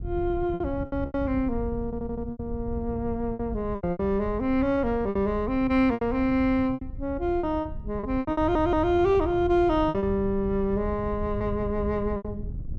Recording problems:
wind noise; below 110 Hz, SNR 11 dB
packet loss; 11% of the sound replaced, filled with repeated pitch periods
stutter; at 2 s and at 8.5 s

